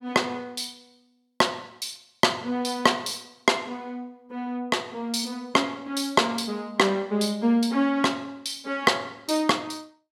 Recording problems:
none

